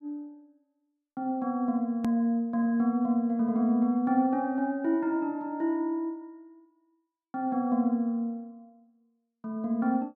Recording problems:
hard cut with a click; at 2 s

